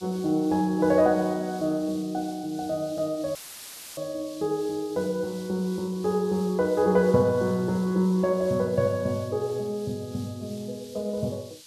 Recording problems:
hiss; SNR 21 dB
audio cutting out; at 3.5 s for 0.5 s; filled with static

